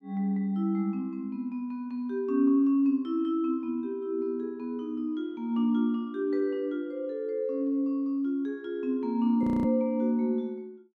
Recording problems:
audio freezing; at 9.5 s

